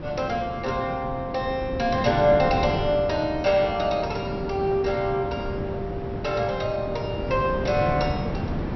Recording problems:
treble cut off; nothing above 5.7 kHz
wind on the microphone; below 400 Hz, SNR 7 dB

